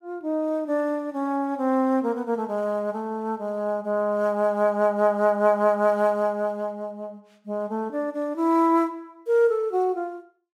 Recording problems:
none

